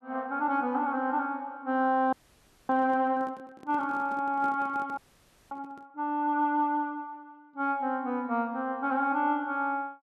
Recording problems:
handling noise; from 2 to 6 s; peak -10 dB vs average level
audio freezing; at 2 s for 0.5 s and at 5 s for 0.5 s

